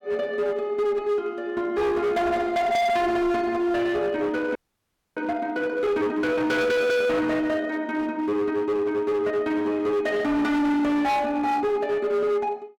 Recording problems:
distorted audio; hard clipping, uneven, signal-to-distortion ratio 8 dB
audio freezing; at 4.5 s for 0.5 s

